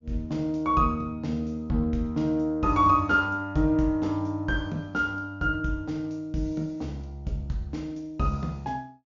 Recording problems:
treble missing; nothing above 7.2 kHz

